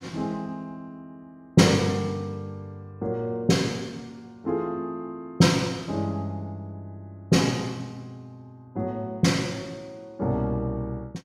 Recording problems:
none

